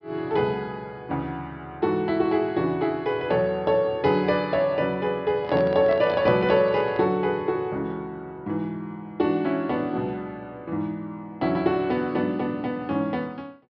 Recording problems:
low-pass filter; nothing above 5.5 kHz
handling noise; from 5.5 to 7 s; peak -3 dB vs average level

